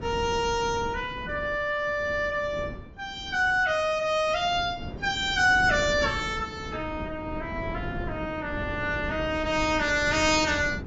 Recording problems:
lossy compression; AAC, log-spectral distance 2 dB, nothing above 7.1 kHz
wind noise; below 310 Hz, SNR 12 dB

